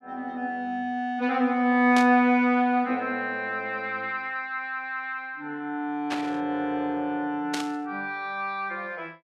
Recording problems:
static burst; at 2 s, at 6 s and at 7.5 s; peak 0 dB vs average level

